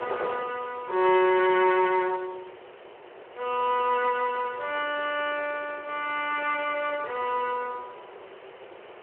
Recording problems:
phone line; 320 Hz to 3.1 kHz, Speex
background hiss; SNR 27 dB
wind noise; below 1 kHz, SNR 17 dB

